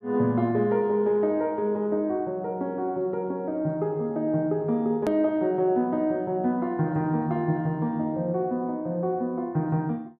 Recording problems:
hard cut with a click; at 5 s

